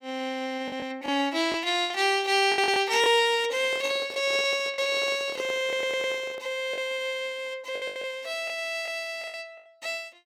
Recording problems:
packet loss; 8% of the sound replaced, filled with the last packet
microphone handling noise; from 3.5 to 6.5 s; peak -7 dB vs average level
stutter; at 5.5 s

